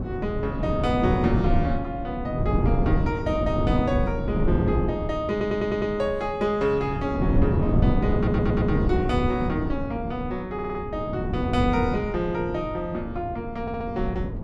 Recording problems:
wind on the microphone; below 230 Hz, SNR 0 dB
stutter; 4 times, first at 5.5 s

